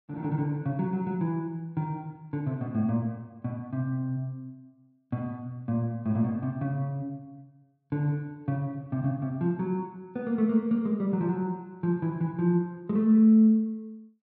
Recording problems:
none

